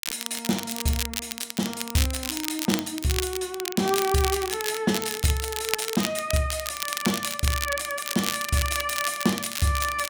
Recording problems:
crackle; vinyl, SNR 3 dB

